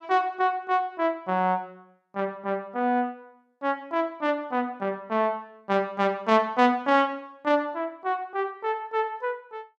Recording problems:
none

